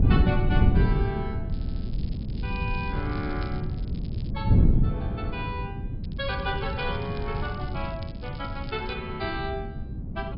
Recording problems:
treble cut off; nothing above 5.5 kHz
wind noise; below 160 Hz, SNR -5 dB
crackle; from 1.5 to 4.5 s and from 6 to 9 s; loose cable, SNR 18 dB
stutter; at 1.5 s

